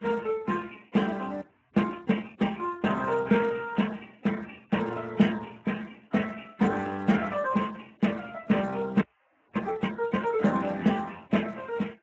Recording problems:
codec artefacts; MP3, then Speex, log-spectral distance 11 dB
audio freezing; at 1.5 s and at 9 s for 0.5 s

